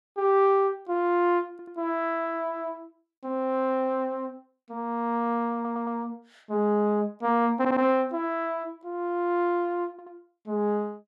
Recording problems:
audio stuttering; 4 times, first at 1.5 s

